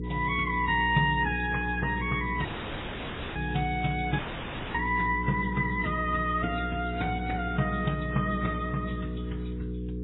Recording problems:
lossy codec; MP3, then AAC, log-spectral distance 7 dB, nothing above 3.8 kHz
hum; 60 Hz, harmonics up to 480 Hz, SNR 6 dB
dropout; at 2.5 s for 1 s and at 4 s for 0.5 s

